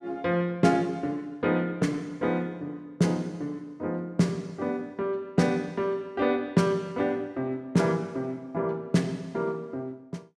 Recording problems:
none

